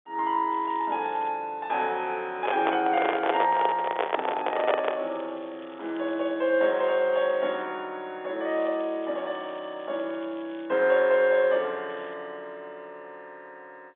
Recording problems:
telephone audio; 320 Hz to 3.6 kHz, G.711
crackle; 4 times, first at 0.5 s; loose cable, SNR 27 dB
microphone handling noise; from 2.5 to 5 s; peak +5 dB vs average level

